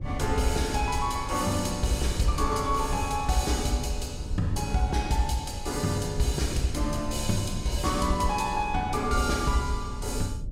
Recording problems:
mains hum; 50 Hz, harmonics up to 600 Hz, SNR 23 dB
low-frequency rumble; below 86 Hz, SNR 9 dB

